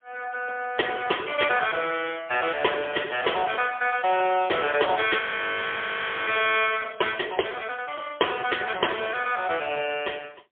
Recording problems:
telephone audio; 300 Hz to 3.4 kHz, AMR-NB, then MP3
frozen audio; at 5 s for 1 s

